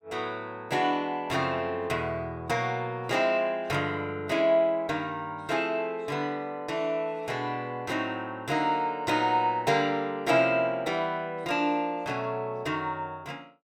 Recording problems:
none

